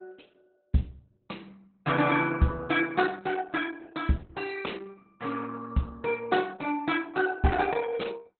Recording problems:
lossy compression; Opus, log-spectral distance 5 dB, nothing above 4 kHz

